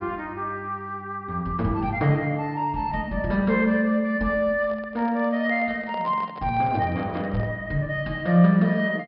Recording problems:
treble cut off; nothing above 5.5 kHz
handling noise; from 4.5 to 7.5 s; peak -11 dB vs average level

